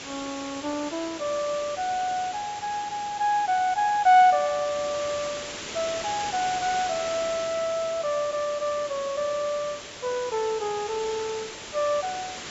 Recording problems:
treble missing; nothing above 8 kHz
hiss; slope -2 dB per octave, SNR 10 dB

